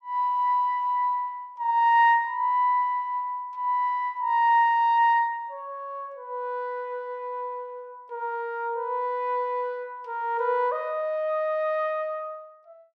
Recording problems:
none

